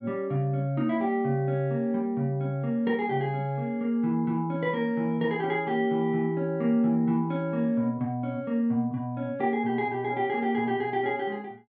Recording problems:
none

